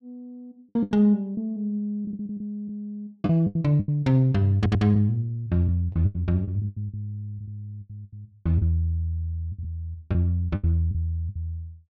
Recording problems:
lost packets; 12% of the sound replaced, filled with the last packet
stutter; at 4.5 s

